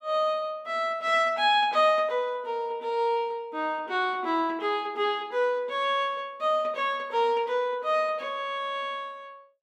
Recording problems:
none

